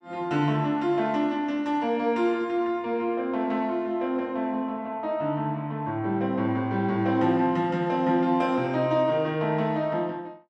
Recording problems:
none

